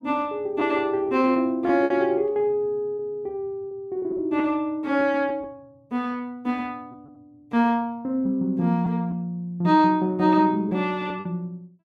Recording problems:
packet loss; 5% of the sound replaced, filled with repeated pitch periods

